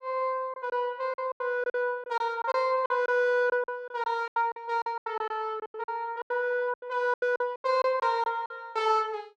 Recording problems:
lost packets; 14% of the sound replaced, filled with silence

